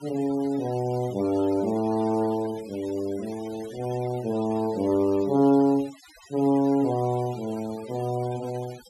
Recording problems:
denoising artefacts; signal-to-artefact ratio 20 dB

